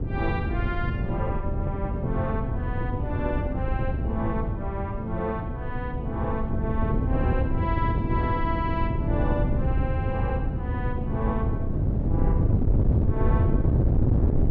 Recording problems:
wind noise; below 150 Hz, SNR -5 dB

